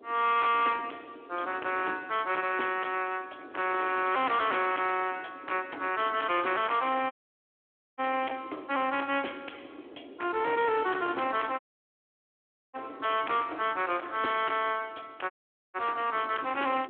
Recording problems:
telephone audio; 240 Hz to 3.4 kHz, Speex
distortion; hard clipping, signal-to-distortion ratio 10 dB
wind on the microphone; below 750 Hz, SNR 19 dB
audio cutting out; at 7 s for 1 s, at 12 s for 1 s and at 15 s

